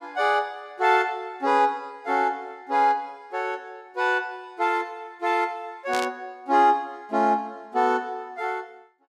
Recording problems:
burst of static; at 6 s; peak -3 dB vs average level

